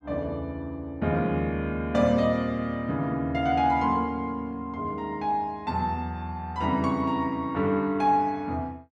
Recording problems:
none

